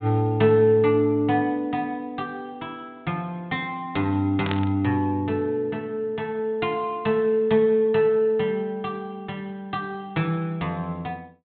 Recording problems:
low-pass filter; nothing above 4 kHz
static burst; at 4.5 s; peak -3 dB vs average level

